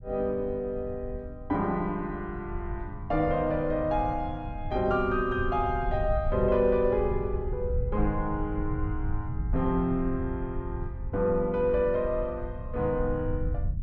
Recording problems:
rumble; below 88 Hz, SNR 7 dB

